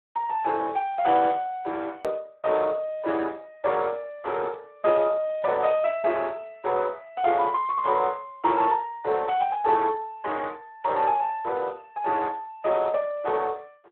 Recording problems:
phone line; 300 Hz to 3.6 kHz, Speex
hard cut with a click; at 2 s

